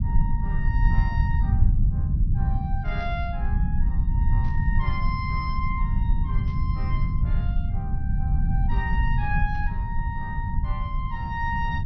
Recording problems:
low-pass filter; nothing above 6.1 kHz
low-frequency rumble; below 100 Hz, SNR -8 dB
burst of static; 4 times, first at 3 s; peak -14 dB vs average level

